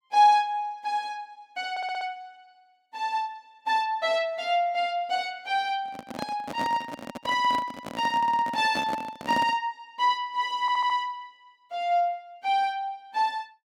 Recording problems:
stutter; at 1.5 s, at 8 s and at 11 s
handling noise; from 6 to 9.5 s; peak -1 dB vs average level

